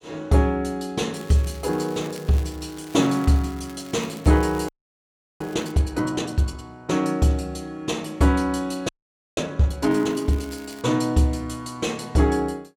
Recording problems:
crackling; from 1 to 5.5 s and at 10 s; loose cable, SNR 22 dB
frozen audio; at 4.5 s for 0.5 s and at 9 s

